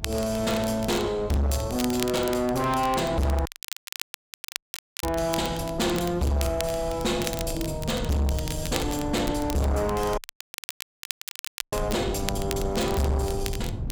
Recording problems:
distorted audio; soft clipping, signal-to-distortion ratio 7 dB
electrical hum; 50 Hz, harmonics up to 300 Hz, SNR 19 dB
rumble; below 150 Hz, SNR 10 dB
crackle; vinyl, SNR 11 dB
dropout; at 3.5 s for 1.5 s and at 10 s for 1.5 s

